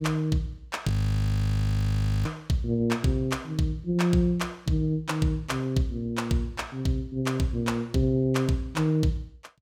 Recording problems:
frozen audio; at 1 s for 1.5 s

